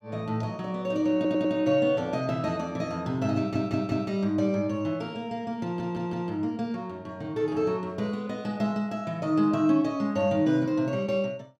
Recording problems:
stutter; at 1 s, at 3.5 s and at 5.5 s

